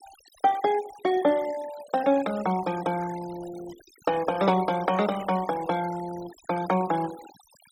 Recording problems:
noise reduction artefacts; signal-to-artefact ratio 17 dB

